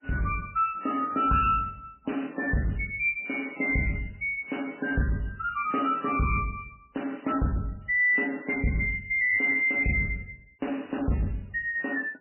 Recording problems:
codec artefacts; MP3, log-spectral distance 4 dB, nothing above 2.4 kHz
distorted audio; soft clipping, signal-to-distortion ratio 11 dB

